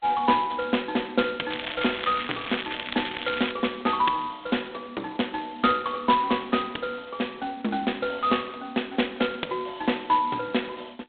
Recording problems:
telephone audio; 220 Hz to 3.7 kHz, G.726
crackling; from 1.5 to 3.5 s; loose cable, SNR 8 dB

